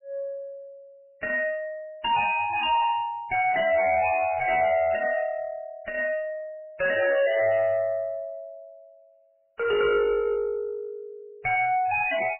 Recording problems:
lossy compression; MP3, log-spectral distance 3 dB, nothing above 2.5 kHz
distortion; soft clipping, signal-to-distortion ratio 6 dB

